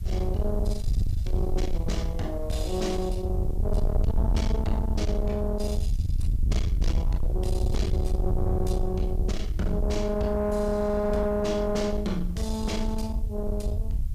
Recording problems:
distortion; soft clipping, signal-to-distortion ratio 8 dB
hiss; slope +1 dB per octave, SNR 29 dB
low-frequency rumble; below 80 Hz, SNR 0 dB

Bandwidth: 15 kHz